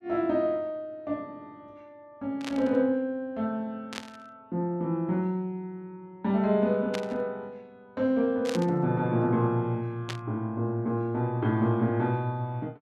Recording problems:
burst of static; 5 times, first at 2.5 s; peak -2 dB vs average level

